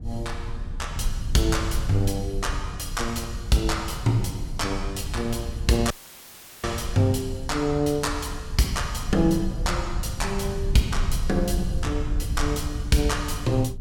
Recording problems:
low-frequency rumble; below 90 Hz, SNR 6 dB
audio cutting out; at 6 s for 0.5 s; filled with static

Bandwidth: 18 kHz